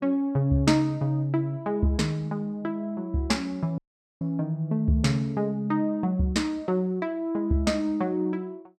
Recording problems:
audio cutting out; at 4 s

